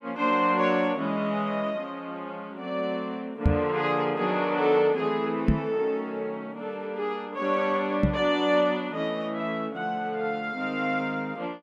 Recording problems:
knock on the microphone; at 3.5 s, at 5.5 s and at 8 s; peak +9 dB vs average level

